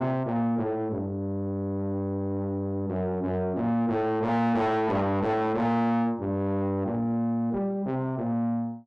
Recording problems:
distorted audio; soft clipping, signal-to-distortion ratio 7 dB

